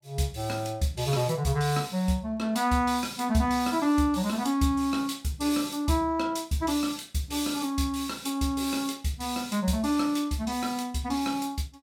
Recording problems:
none

